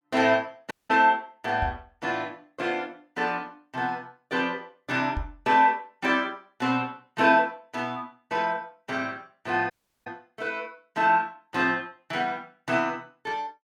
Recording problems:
dropout; at 0.5 s and at 9.5 s
microphone thump; at 1.5 s and at 5 s; peak -1 dB vs average level

